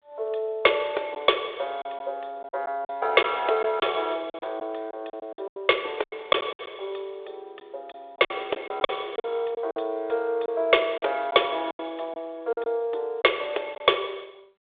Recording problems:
phone line; 340 Hz to 3.6 kHz, G.726
packet loss; 9% of the sound replaced, filled with silence

